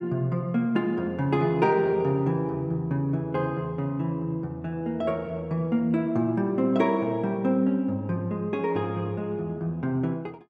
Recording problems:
none

